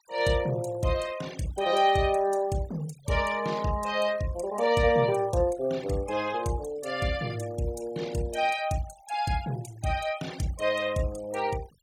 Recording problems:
noise reduction artefacts; signal-to-artefact ratio 20 dB

